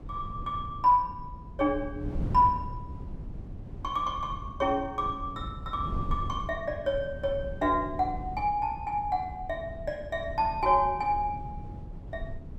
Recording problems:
wind noise; below 150 Hz, SNR 11 dB

